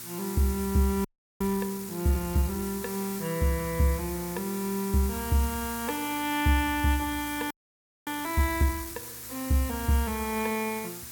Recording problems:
hum; 60 Hz, harmonics up to 840 Hz, SNR 25 dB
hiss; SNR 9 dB
frozen audio; at 1 s and at 7.5 s for 0.5 s

